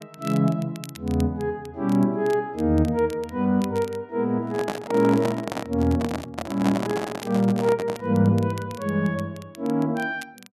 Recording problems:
crackling; vinyl, SNR 23 dB
handling noise; from 4.5 to 8 s; peak +1 dB vs average level

